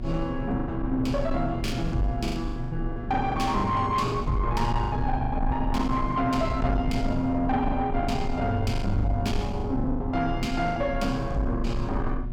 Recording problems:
distortion; soft clipping, signal-to-distortion ratio 12 dB
electrical hum; 60 Hz, harmonics up to 1.1 kHz, SNR 10 dB
rumble; below 72 Hz, strongest tone 28 Hz, SNR 7 dB
lost packets; 11% of the sound replaced, filled with the last packet

